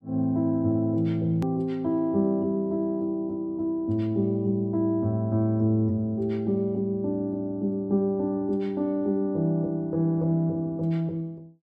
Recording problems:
edit click; at 1.5 s

